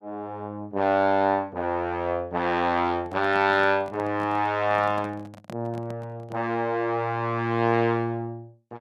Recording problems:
microphone handling noise; from 3 to 6.5 s; peak -10 dB vs average level

